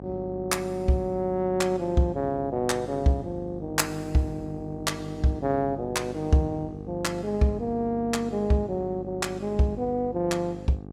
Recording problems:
hum; 50 Hz, harmonics up to 1.1 kHz, SNR 12 dB

